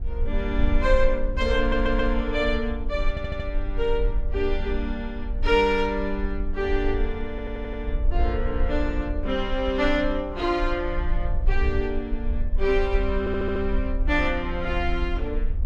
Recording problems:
rumble; below 52 Hz, SNR 4 dB
audio stuttering; 4 times, first at 1.5 s

